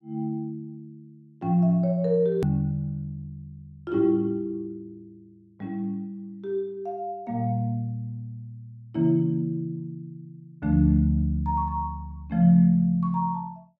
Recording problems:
click at an edit; at 2.5 s

